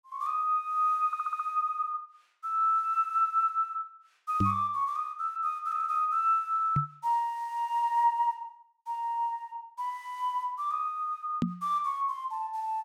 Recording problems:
audio stuttering; at 1 s
microphone bump; at 4.5 s, at 7 s and at 11 s; peak +5 dB vs average level

